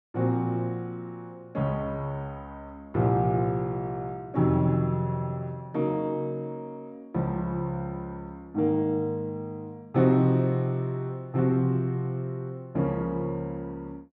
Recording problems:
none

